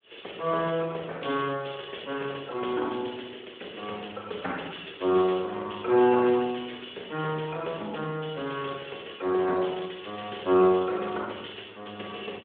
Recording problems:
phone line; 300 Hz to 3.4 kHz, Speex

